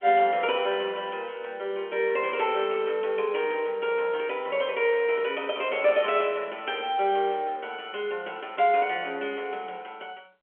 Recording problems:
phone line; 340 Hz to 3.3 kHz, G.711

